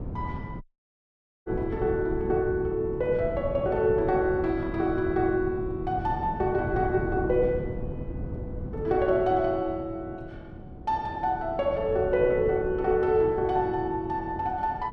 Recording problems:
wind noise; below 240 Hz, SNR 10 dB
audio cutting out; at 0.5 s for 1 s

